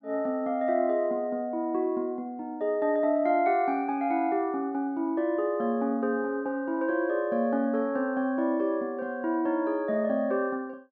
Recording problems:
none

